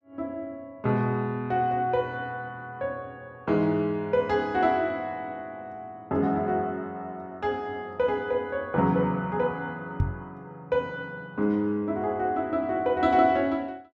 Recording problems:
microphone thump; at 10 s; peak +5 dB vs average level

